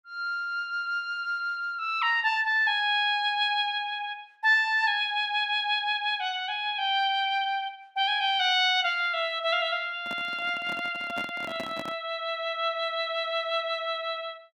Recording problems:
microphone handling noise; from 10 to 12 s; peak -7 dB vs average level

